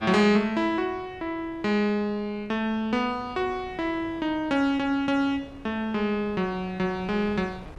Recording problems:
wind on the microphone; below 610 Hz, SNR 21 dB

